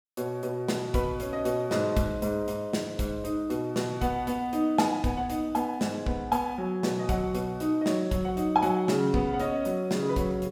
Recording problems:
none

